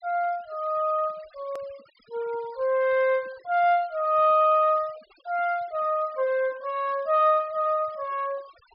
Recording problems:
low-pass filter; nothing above 5.5 kHz
denoising artefacts; signal-to-artefact ratio 27 dB
hard cut with a click; at 1.5 s

